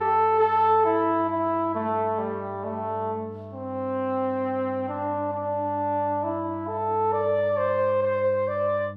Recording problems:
hum; 50 Hz, harmonics up to 600 Hz, SNR 17 dB

